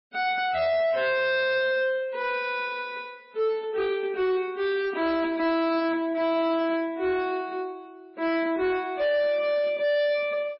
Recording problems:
lossy codec; MP3, log-spectral distance 2 dB, nothing above 4.9 kHz
distortion; hard clipping, signal-to-distortion ratio 10 dB

